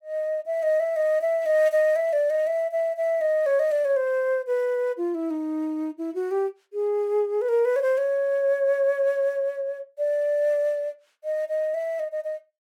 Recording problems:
none

